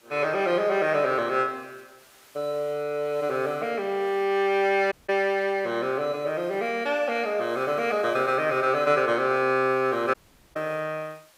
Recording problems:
background hiss; slope -1 dB per octave, SNR 29 dB
dropout; at 5 s and at 10 s

